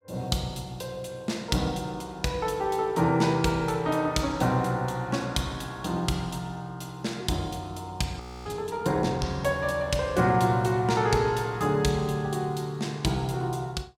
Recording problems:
audio freezing; at 8 s

